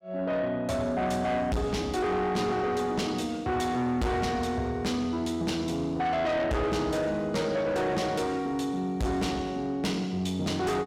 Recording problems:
distortion; soft clipping, signal-to-distortion ratio 7 dB

